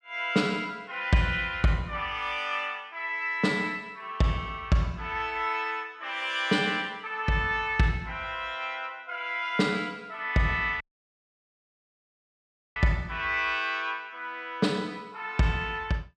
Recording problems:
dropout; at 11 s for 2 s

